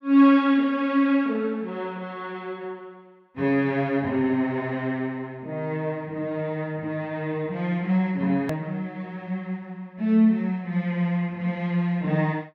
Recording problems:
edit click; at 8.5 s

